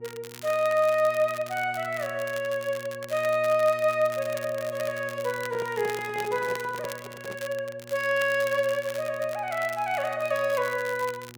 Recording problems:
hum; 60 Hz, harmonics up to 960 Hz, SNR 20 dB
crackle; vinyl, SNR 17 dB
microphone handling noise; from 5.5 to 7.5 s; peak -7 dB vs average level

